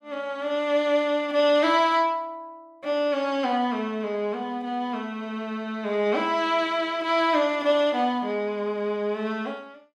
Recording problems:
none

